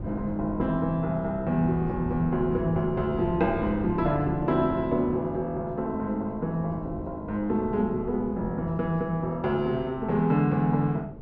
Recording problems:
wind on the microphone; below 290 Hz, SNR 11 dB

